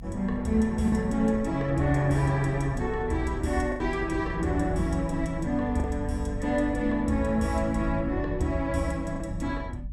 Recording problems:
rumble; below 98 Hz, strongest tone 48 Hz, SNR 10 dB
packet loss; 2% of the sound replaced, filled with the last packet

